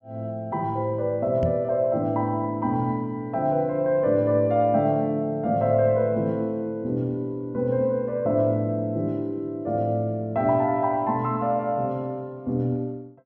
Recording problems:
microphone thump; at 1.5 s; peak +1 dB vs average level

